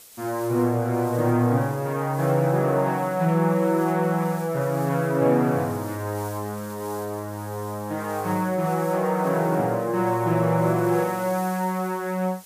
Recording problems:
background hiss; SNR 20 dB

